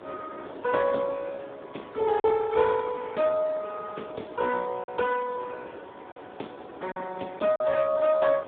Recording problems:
phone line; 280 Hz to 3 kHz, Speex
wind on the microphone; below 850 Hz, SNR 18 dB
lost packets; 2% of the sound replaced, filled with silence

